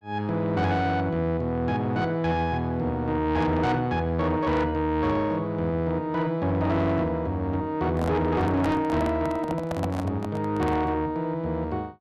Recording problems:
distortion; soft clipping, signal-to-distortion ratio 10 dB
handling noise; from 8 to 11 s; peak 0 dB vs average level

